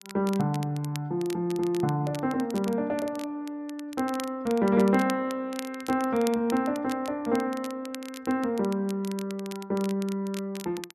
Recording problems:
crackling; vinyl, SNR 16 dB

